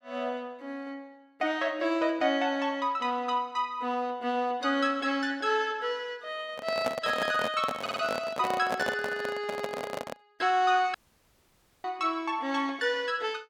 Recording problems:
handling noise; from 6.5 to 10 s; peak +2 dB vs average level
audio stuttering; at 8 s
dropout; at 11 s for 1 s

